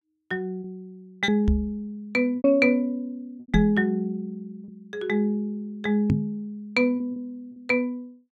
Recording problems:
packet loss; 5% of the sound replaced, filled with repeated pitch periods
knock on the microphone; at 1.5 s, at 3.5 s and at 6 s; peak +6 dB vs average level

